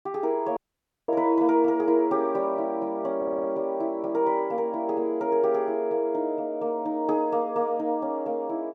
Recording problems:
dropout; at 0.5 s for 0.5 s
audio stuttering; at 3 s

